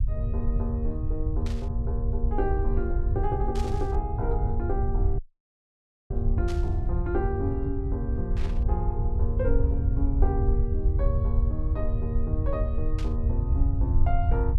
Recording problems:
rumble; below 82 Hz, SNR -5 dB
burst of static; 5 times, first at 1.5 s; peak -5 dB vs average level
audio cutting out; at 5 s for 1 s

